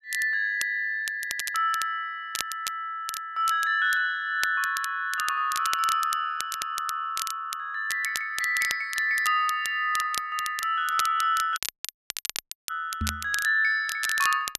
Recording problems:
crackling; vinyl, SNR 9 dB
audio cutting out; at 12 s for 1 s
knock on the microphone; at 13 s; peak -1 dB vs average level

